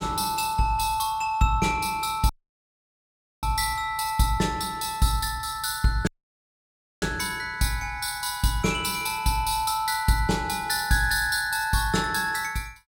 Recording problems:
audio cutting out; at 2.5 s for 1 s and at 6 s for 1 s

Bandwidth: 16.5 kHz